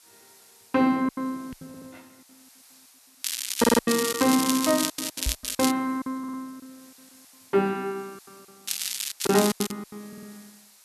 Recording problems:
hiss; SNR 25 dB
lost packets; 15% of the sound replaced, filled with silence
microphone bump; at 1.5 s and at 5.5 s; peak 0 dB vs average level
audio stuttering; 4 times, first at 1.5 s
crackling; from 3 to 5.5 s, at 5.5 s and from 8.5 to 9.5 s; loose cable, SNR 3 dB

